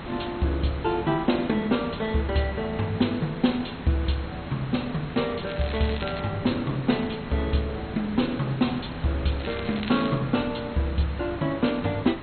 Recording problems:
lossy codec; MP2, log-spectral distance 8 dB, nothing above 4.2 kHz
background hiss; SNR 11 dB
crackling; at 5.5 s and at 9.5 s; loose cable, SNR 12 dB

